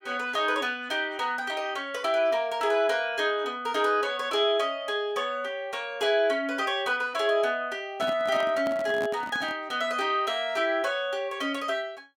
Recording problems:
handling noise; from 8 to 9.5 s; peak -6 dB vs average level

